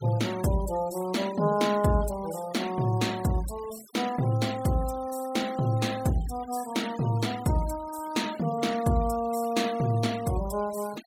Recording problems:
noise reduction artefacts; signal-to-artefact ratio 17 dB

